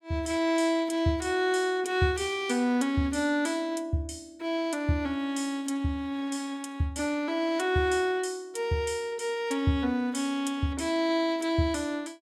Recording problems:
none

